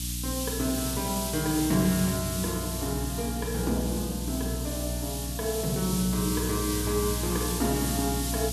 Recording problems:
electrical hum; 60 Hz, harmonics up to 300 Hz, SNR 5 dB
background hiss; SNR 3 dB

